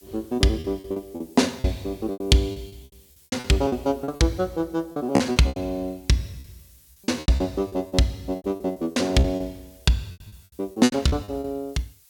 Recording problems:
hiss; slope +4 dB per octave, SNR 28 dB
packet loss; 16% of the sound replaced, filled with repeated pitch periods

